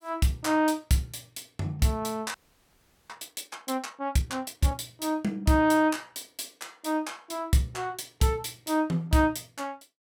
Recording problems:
audio freezing; at 2.5 s for 1 s

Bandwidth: 17.5 kHz